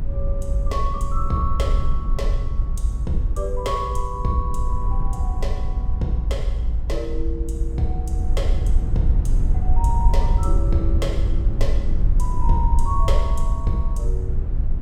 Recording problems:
low-frequency rumble; below 58 Hz, SNR -5 dB

